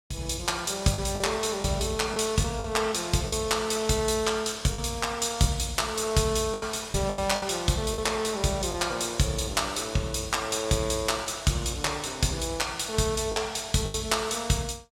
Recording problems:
packet loss; 5% of the sound replaced, filled with the last packet

